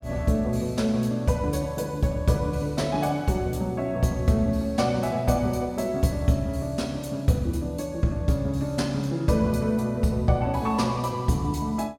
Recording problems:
none

